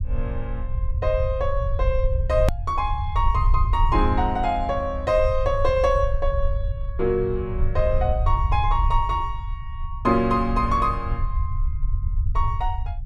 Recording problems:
low-frequency rumble; below 74 Hz, SNR 3 dB
hard cut with a click; at 2.5 s

